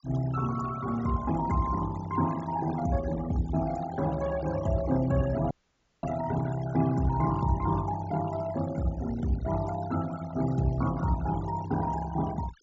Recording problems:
treble cut off; nothing above 7.3 kHz
noise reduction artefacts; signal-to-artefact ratio 15 dB
audio cutting out; at 5.5 s for 0.5 s

